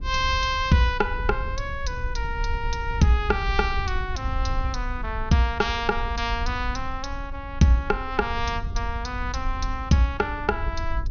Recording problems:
low-pass filter; nothing above 6.5 kHz
wind noise; below 68 Hz, SNR 7 dB

